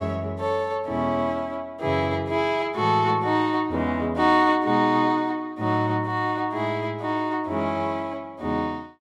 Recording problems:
none

